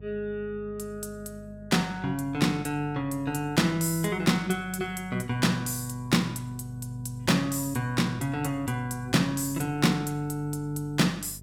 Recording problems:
hum; 50 Hz, harmonics up to 450 Hz, SNR 19 dB

